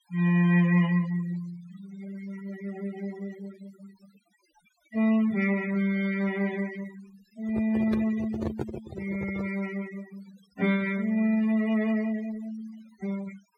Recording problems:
noise reduction artefacts; signal-to-artefact ratio 18 dB
handling noise; from 7.5 to 9.5 s; peak -1 dB vs average level

